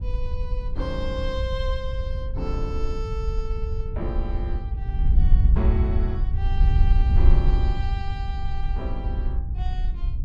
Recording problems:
wind noise; below 68 Hz, SNR -9 dB

